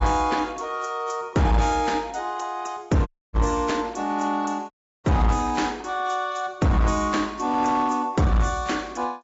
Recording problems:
treble cut off; nothing above 7.6 kHz
lossy compression; AAC, then AAC, log-spectral distance 3 dB
distorted audio; hard clipping, uneven, signal-to-distortion ratio 10 dB
dropout; at 3 s and at 4.5 s

